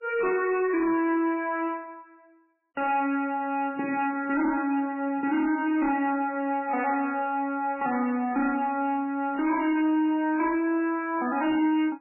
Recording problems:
codec artefacts; MP3, log-spectral distance 3 dB, nothing above 2.6 kHz
distortion; hard clipping, signal-to-distortion ratio 11 dB

